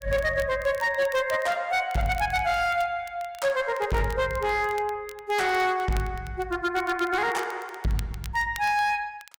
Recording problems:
distortion; hard clipping, signal-to-distortion ratio 11 dB
crackle; vinyl, SNR 21 dB

